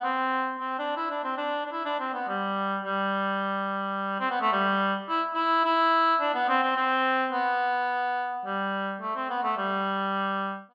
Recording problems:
none

